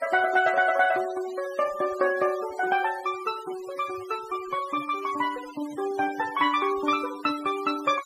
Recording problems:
noise reduction artefacts; signal-to-artefact ratio 16 dB

